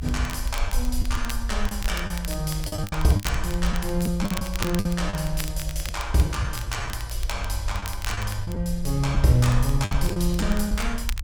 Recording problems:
rumble; below 56 Hz, SNR 5 dB
crackling; vinyl, SNR 12 dB
packet loss; 8% of the sound replaced, filled with the last packet

